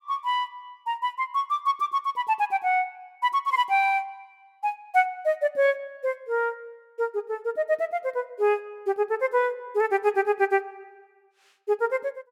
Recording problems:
none

